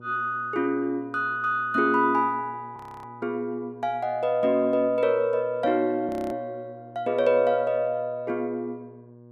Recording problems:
hum; 60 Hz, harmonics up to 1.1 kHz, SNR 22 dB
audio freezing; at 3 s and at 6 s

